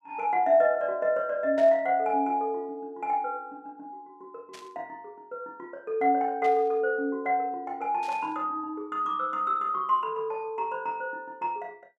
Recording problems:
static burst; 4 times, first at 1.5 s; peak -14 dB vs average level

